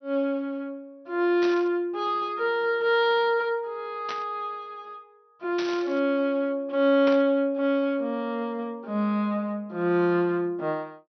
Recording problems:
low-pass filter; nothing above 6 kHz
burst of static; 4 times, first at 1.5 s; peak -5 dB vs average level

